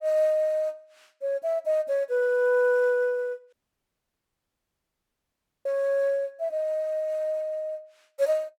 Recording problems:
dropout; at 3.5 s for 2 s

